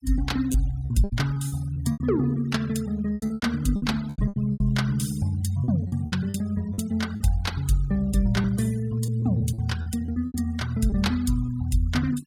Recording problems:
noise reduction artefacts; signal-to-artefact ratio 20 dB
lost packets; 11% of the sound replaced, filled with repeated pitch periods

